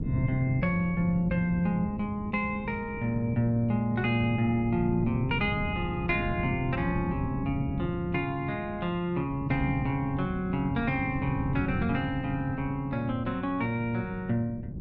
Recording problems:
hum; 50 Hz, harmonics up to 600 Hz, SNR 21 dB
wind on the microphone; below 220 Hz, SNR 7 dB

